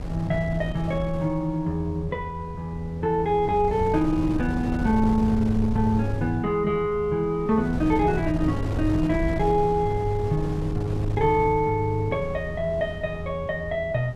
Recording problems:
wind on the microphone; below 190 Hz, SNR 9 dB

